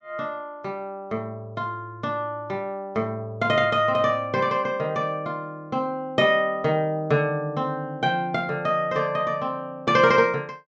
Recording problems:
treble missing; nothing above 8 kHz

